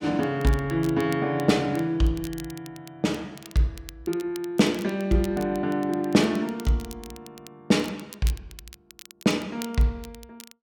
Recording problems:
crackle; vinyl, SNR 20 dB

